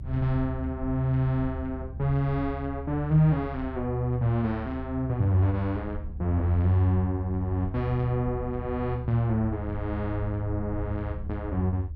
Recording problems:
rumble; below 76 Hz, strongest tone 74 Hz, SNR 10 dB

